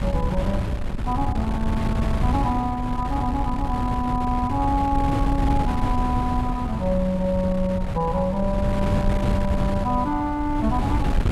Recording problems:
wind on the microphone; below 150 Hz, SNR 1 dB

